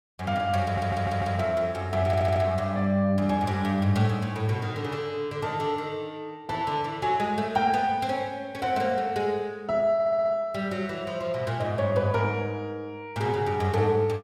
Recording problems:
audio stuttering; at 0.5 s, at 2 s and at 10 s

